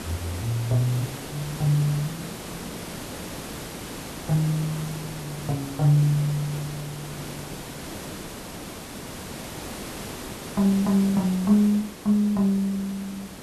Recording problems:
hiss; slope -4 dB per octave, SNR 11 dB

